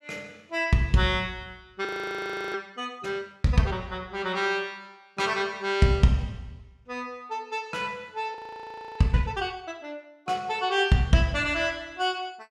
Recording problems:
frozen audio; at 2 s for 0.5 s and at 8.5 s for 0.5 s

